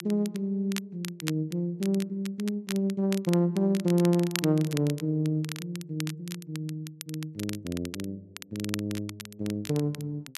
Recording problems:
crackling; vinyl, SNR 12 dB

